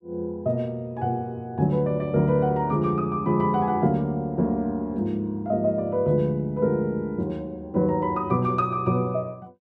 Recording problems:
none

